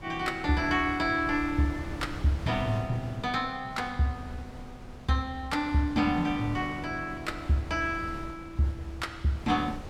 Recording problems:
wind noise; below 510 Hz, SNR 13 dB

